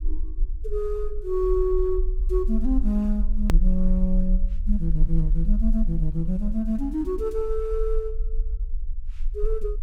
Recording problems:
low-frequency rumble; below 40 Hz, strongest tone 22 Hz, SNR 2 dB
edit click; at 3.5 s

